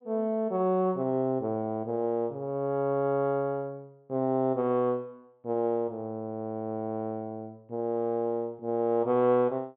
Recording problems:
treble cut off; nothing above 4 kHz

